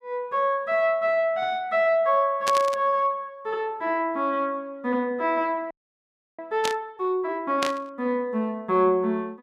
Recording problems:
burst of static; at 2.5 s, at 6.5 s and at 7.5 s; peak +1 dB vs average level
audio freezing; at 5.5 s for 0.5 s

